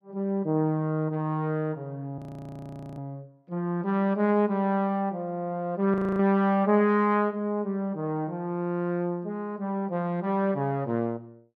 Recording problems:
frozen audio; at 2 s for 1 s and at 6 s

